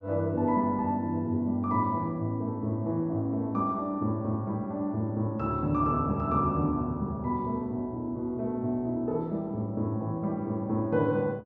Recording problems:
none

